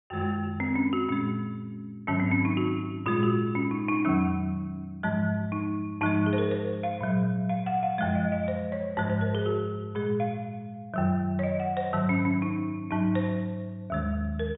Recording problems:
low-pass filter; nothing above 3.6 kHz

